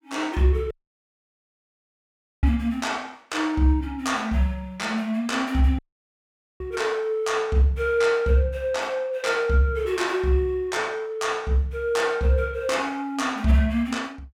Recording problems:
audio cutting out; at 0.5 s for 1.5 s and at 6 s for 1 s

